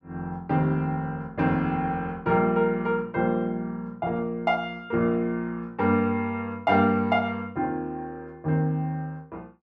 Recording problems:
none

